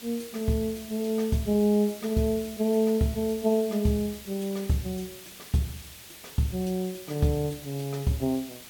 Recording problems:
hiss; slope 0 dB per octave, SNR 15 dB

